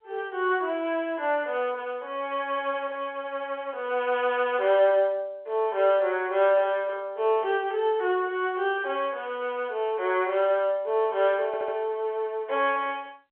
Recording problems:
phone line; 320 Hz to 3.6 kHz, G.711
stutter; at 11 s

